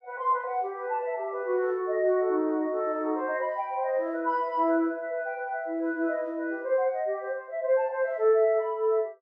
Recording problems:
none

